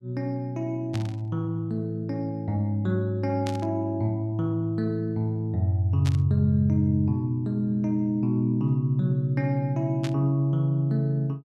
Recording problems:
burst of static; 4 times, first at 1 s; peak -7 dB vs average level

